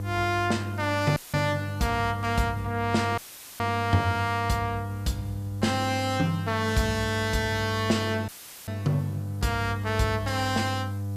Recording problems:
distorted audio; soft clipping, signal-to-distortion ratio 6 dB
mains hum; 50 Hz, harmonics up to 700 Hz, SNR 6 dB
hiss; slope 0 dB per octave, SNR 27 dB
dropout; at 1 s, at 3 s and at 8.5 s; filled with static

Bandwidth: 14.5 kHz